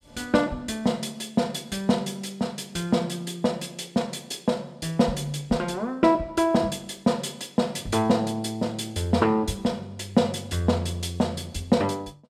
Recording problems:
none

